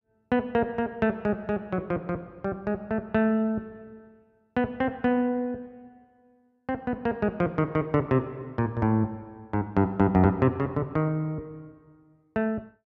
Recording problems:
none

